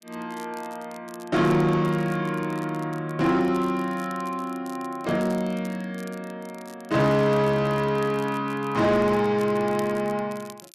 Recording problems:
distortion; soft clipping, signal-to-distortion ratio 12 dB
crackling; vinyl, SNR 25 dB

